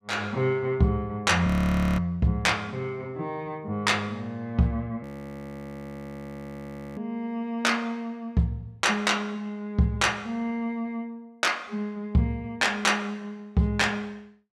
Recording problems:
frozen audio; at 1.5 s for 0.5 s and at 5 s for 2 s

